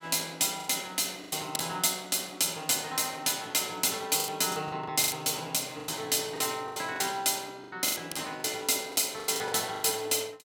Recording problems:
lost packets; 12% of the sound replaced, filled with the last packet

